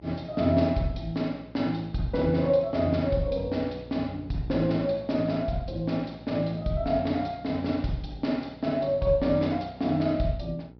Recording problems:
treble missing; nothing above 5.5 kHz
hum; 60 Hz, harmonics up to 900 Hz, SNR 20 dB

